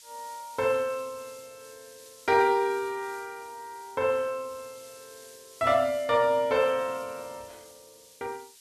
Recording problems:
hiss; SNR 22 dB

